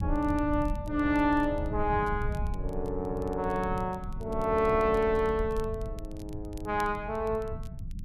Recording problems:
rumble; below 110 Hz, SNR 9 dB
crackle; vinyl, SNR 28 dB

